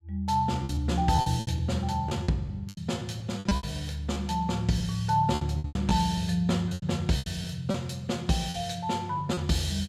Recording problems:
packet loss; 11% of the sound replaced, filled with repeated pitch periods

